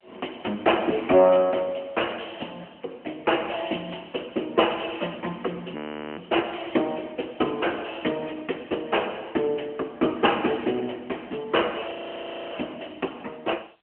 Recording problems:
telephone audio; 260 Hz to 3.1 kHz, AMR-NB
audio freezing; at 5.5 s and at 12 s for 0.5 s

